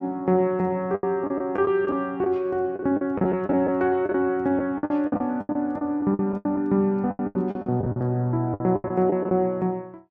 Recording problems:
lost packets; 15% of the sound replaced, filled with the last packet

